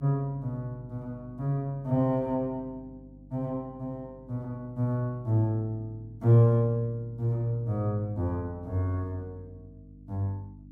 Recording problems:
hum; 50 Hz, harmonics up to 300 Hz, SNR 21 dB

